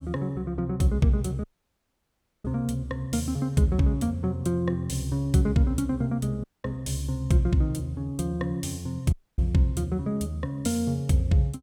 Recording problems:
audio cutting out; at 1.5 s for 1 s, at 6.5 s and at 9 s

